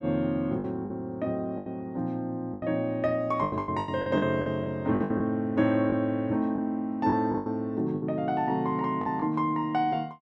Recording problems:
lost packets; 10% of the sound replaced, filled with the last packet

